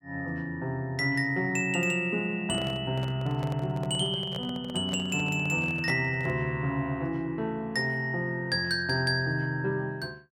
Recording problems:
handling noise; from 2.5 to 6.5 s; peak -4 dB vs average level

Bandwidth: 16 kHz